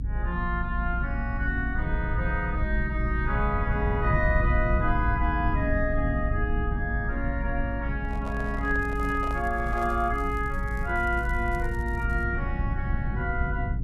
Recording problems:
low-frequency rumble; below 94 Hz, SNR 1 dB
handling noise; from 8 to 10 s; peak -8 dB vs average level
crackling; from 9 to 12 s; loose cable, SNR 27 dB

